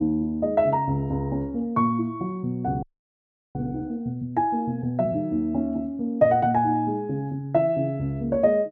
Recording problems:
frozen audio; at 3 s for 0.5 s

